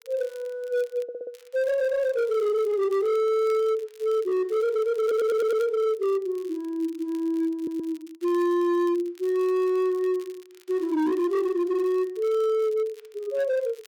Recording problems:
distorted audio; hard clipping, signal-to-distortion ratio 11 dB
crackle; vinyl, SNR 28 dB
stutter; at 1 s, at 5 s and at 7.5 s

